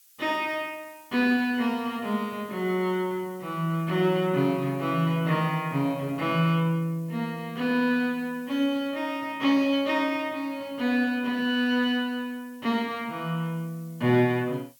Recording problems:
background hiss; slope +5 dB per octave, SNR 27 dB

